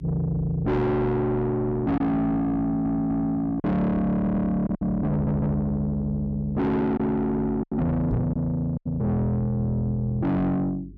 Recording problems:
distorted audio; soft clipping, signal-to-distortion ratio 7 dB
hum; 50 Hz, harmonics up to 400 Hz, SNR 17 dB
lost packets; 3% of the sound replaced, filled with silence
audio stuttering; at 2.5 s, at 4 s and at 5 s
microphone thump; at 8 s; peak +5 dB vs average level

